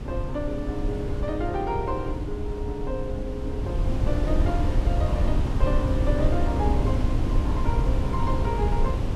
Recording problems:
wind on the microphone; below 100 Hz, SNR -4 dB

